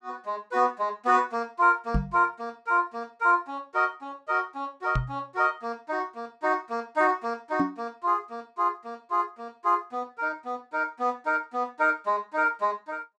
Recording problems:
microphone bump; at 2 s, at 5 s and at 7.5 s; peak +5 dB vs average level

